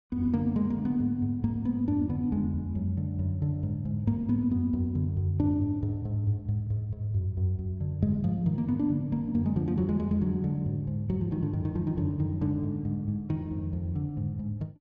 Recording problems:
none

